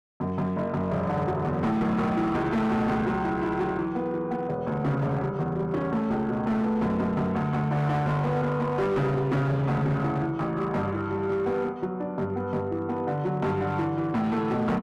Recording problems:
distorted audio; hard clipping, signal-to-distortion ratio 10 dB

